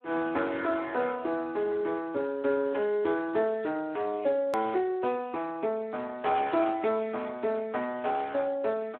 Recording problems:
telephone audio; 280 Hz to 3.9 kHz, Speex
edit click; at 4.5 s

